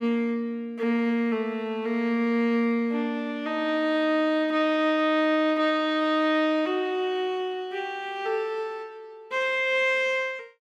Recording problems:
none

